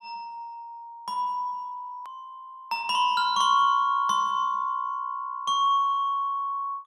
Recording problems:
edit click; at 2 s

